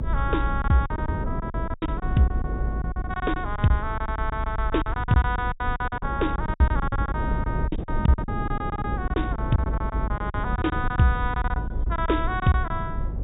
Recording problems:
treble cut off; nothing above 4 kHz
rumble; below 66 Hz, SNR 5 dB
wind on the microphone; below 310 Hz, SNR 7 dB
packet loss; 16% of the sound replaced, filled with silence

